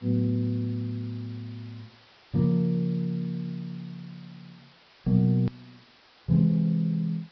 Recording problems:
treble missing; nothing above 5.5 kHz
codec artefacts; MP3, log-spectral distance 9 dB
background hiss; SNR 28 dB
click at an edit; at 5.5 s

